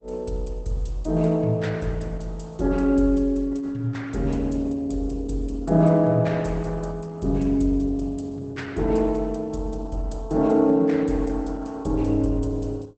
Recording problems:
lossy compression; Opus, log-spectral distance 2 dB, nothing above 8.2 kHz

